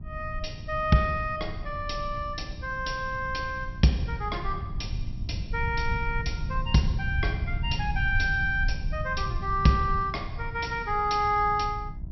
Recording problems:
treble cut off; nothing above 5.7 kHz
electrical hum; 60 Hz, harmonics up to 1 kHz, SNR 21 dB
low-frequency rumble; below 100 Hz, SNR 7 dB

